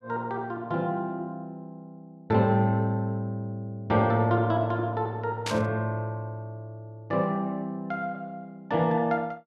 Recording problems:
static burst; at 5.5 s; peak 0 dB vs average level

